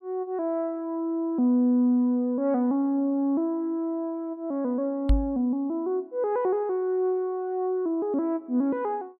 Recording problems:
knock on the microphone; at 5 s; peak +6 dB vs average level

